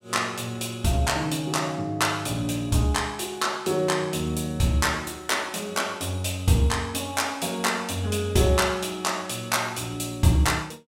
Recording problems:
none

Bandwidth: 16 kHz